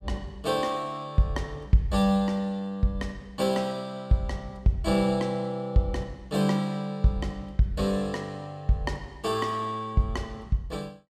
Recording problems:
none

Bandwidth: 15 kHz